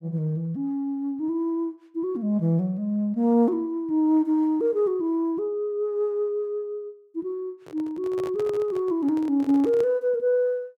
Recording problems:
microphone handling noise; from 7.5 to 10 s; peak -8 dB vs average level

